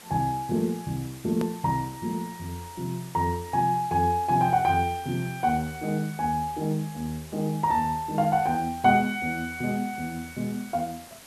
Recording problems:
background hiss; slope -2 dB per octave, SNR 19 dB
click at an edit; at 1.5 s

